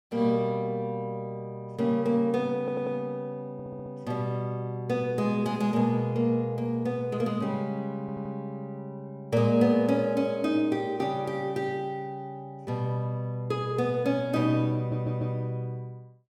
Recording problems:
audio stuttering; 4 times, first at 2.5 s

